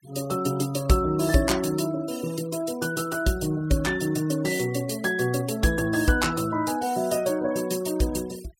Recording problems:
denoising artefacts; signal-to-artefact ratio 19 dB

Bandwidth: 16 kHz